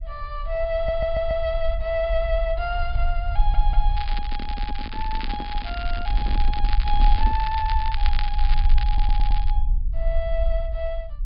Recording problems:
low-pass filter; nothing above 5.1 kHz
low-frequency rumble; below 44 Hz, strongest tone 20 Hz, SNR -2 dB
stutter; at 1 s, at 3.5 s and at 9 s
crackling; from 4 to 9.5 s; loose cable, SNR 9 dB
handling noise; from 4 to 7.5 s; peak -3 dB vs average level

